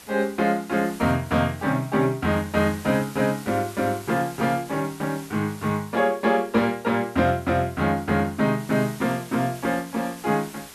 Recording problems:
background hiss; slope -1 dB per octave, SNR 19 dB

